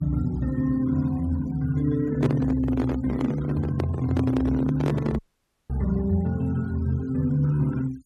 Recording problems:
denoising artefacts; signal-to-artefact ratio 23 dB
microphone handling noise; from 2 to 5 s; peak +2 dB vs average level
audio cutting out; at 5 s for 0.5 s

